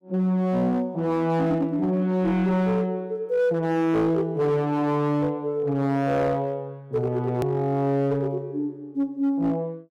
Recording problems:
distortion; hard clipping, uneven, signal-to-distortion ratio 12 dB
click at an edit; at 7.5 s

